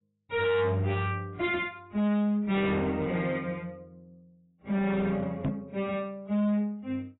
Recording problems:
lossy codec; AAC, log-spectral distance 2 dB, nothing above 3.7 kHz
distortion; hard clipping, signal-to-distortion ratio 7 dB
microphone thump; at 5.5 s; peak +3 dB vs average level

